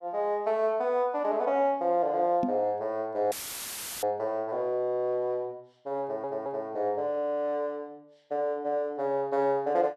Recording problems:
microphone thump; at 2.5 s; peak +2 dB vs average level
dropout; at 3.5 s for 0.5 s; filled with static
stutter; at 6 s

